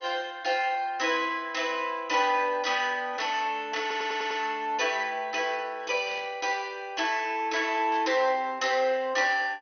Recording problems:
lossy compression; MP2, log-spectral distance 3 dB, nothing above 6.2 kHz
audio stuttering; at 4 s
burst of static; at 6 s and at 8 s; peak -13 dB vs average level

